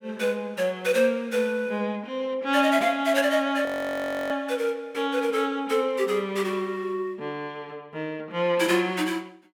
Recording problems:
audio freezing; at 3.5 s for 0.5 s

